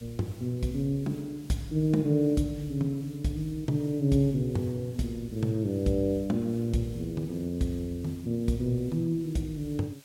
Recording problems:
hiss; slope 0 dB per octave, SNR 25 dB

